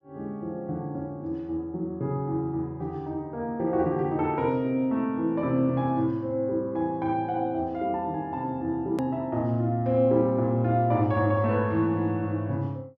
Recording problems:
treble missing; nothing above 8 kHz
click at an edit; at 9 s

